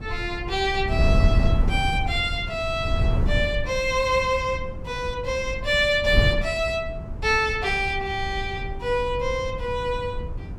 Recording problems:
wind noise; below 110 Hz, SNR 4 dB

